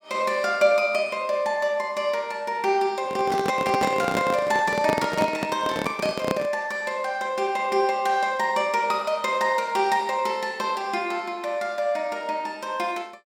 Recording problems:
microphone handling noise; from 3 to 6.5 s; peak +3 dB vs average level

